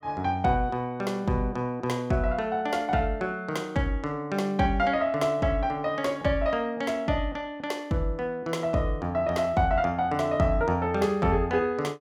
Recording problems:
none

